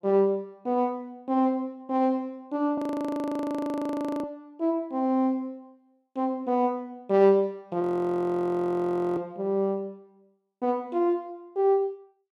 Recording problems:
audio freezing; at 3 s for 1.5 s and at 8 s for 1.5 s

